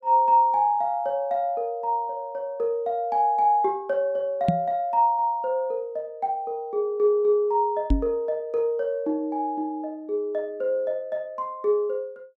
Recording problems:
knock on the microphone; at 4.5 s and at 8 s; peak +6 dB vs average level

